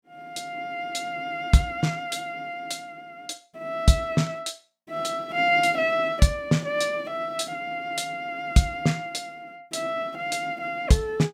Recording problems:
none

